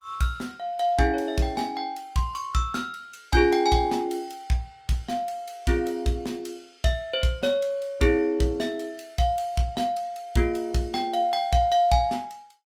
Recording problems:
lossy compression; Opus, log-spectral distance 3 dB, nothing above 19 kHz

